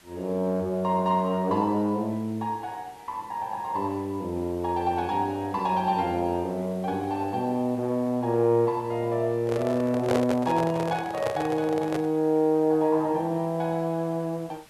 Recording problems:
hiss; SNR 27 dB
microphone handling noise; from 9.5 to 12 s; peak +2 dB vs average level

